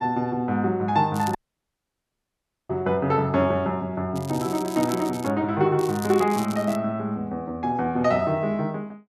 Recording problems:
crackle; at 1 s, from 4 to 5.5 s and at 6 s; loose cable, SNR 17 dB
dropout; at 1.5 s for 1.5 s

